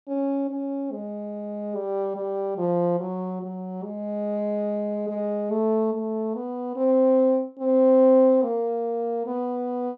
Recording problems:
none

